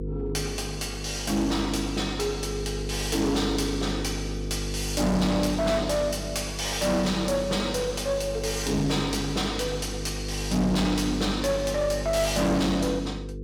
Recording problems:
distortion; hard clipping, uneven, signal-to-distortion ratio 7 dB
hum; 50 Hz, harmonics up to 500 Hz, SNR 7 dB

